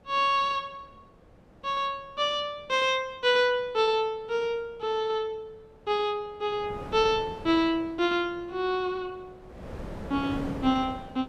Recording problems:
wind noise; below 590 Hz, SNR 14 dB

